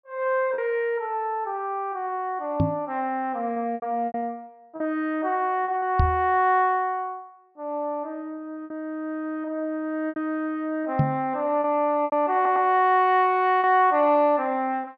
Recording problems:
treble cut off; nothing above 5.5 kHz
lost packets; 5% of the sound replaced, filled with repeated pitch periods
microphone thump; at 2.5 s, at 6 s and at 11 s; peak +6 dB vs average level
stutter; at 12 s

